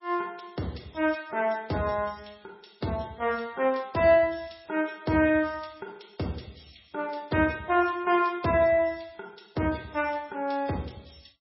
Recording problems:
codec artefacts; MP3, log-spectral distance 7 dB, nothing above 5.5 kHz

